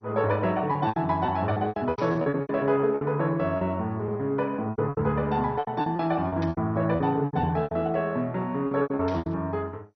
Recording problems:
codec artefacts; MP2, log-spectral distance 2 dB, nothing above 5.2 kHz
packet loss; 16% of the sound replaced, filled with repeated pitch periods
static burst; at 2 s, at 6.5 s and at 9 s; peak -11 dB vs average level

